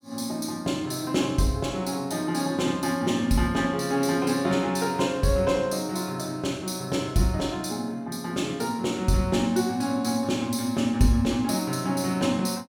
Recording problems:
none

